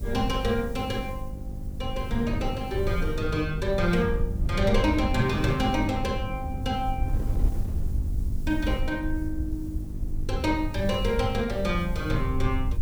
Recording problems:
hum; 50 Hz, harmonics up to 450 Hz, SNR 13 dB
hiss; slope +6 dB per octave, SNR 26 dB
low-frequency rumble; below 76 Hz, SNR 5 dB
wind noise; below 200 Hz, SNR 12 dB

